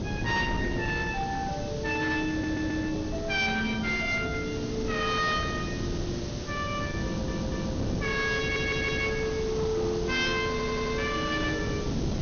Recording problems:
low-pass filter; nothing above 6.5 kHz
distortion; hard clipping, uneven, signal-to-distortion ratio 10 dB
hiss; slope 0 dB per octave, SNR 13 dB
wind noise; below 340 Hz, SNR 5 dB
stutter; 4 times, first at 2.5 s

